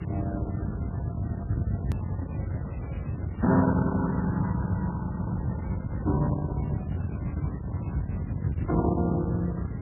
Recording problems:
codec artefacts; Speex, then MP3, log-spectral distance 2 dB, nothing above 11.3 kHz
distortion; soft clipping, signal-to-distortion ratio 11 dB
background hiss; SNR 19 dB
low-frequency rumble; below 190 Hz, SNR 4 dB
click at an edit; at 2 s

